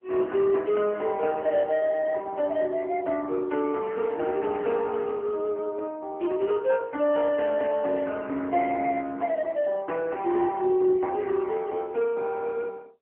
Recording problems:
phone line; 240 Hz to 3.1 kHz, AMR-NB

